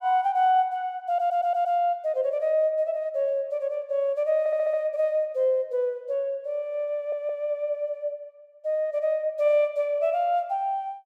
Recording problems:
audio stuttering; at 1 s, at 4.5 s and at 7 s

